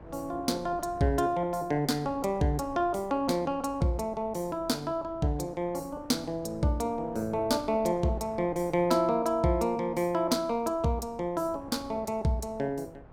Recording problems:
wind on the microphone; below 580 Hz, SNR 21 dB

